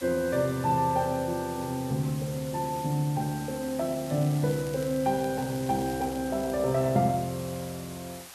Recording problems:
background hiss; SNR 15 dB
crackle; from 4 to 6.5 s; loose cable, SNR 22 dB

